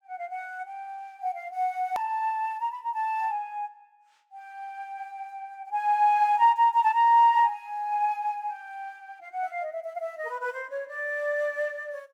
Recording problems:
click at an edit; at 2 s

